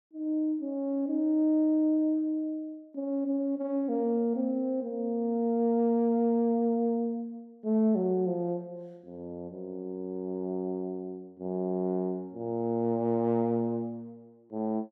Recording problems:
none

